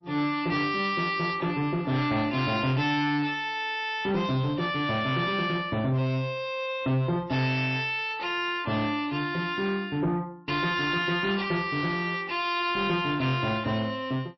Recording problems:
lossy codec; MP3, log-spectral distance 3 dB, nothing above 5.7 kHz
distorted audio; soft clipping, signal-to-distortion ratio 11 dB

